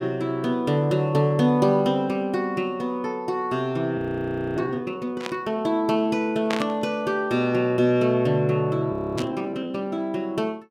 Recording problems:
frozen audio; at 4 s for 0.5 s and at 9 s
static burst; at 5 s, at 6.5 s and at 9 s; peak -1 dB vs average level

